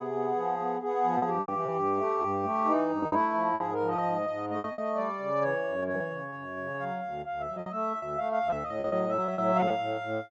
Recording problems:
packet loss; 9% of the sound replaced, filled with repeated pitch periods

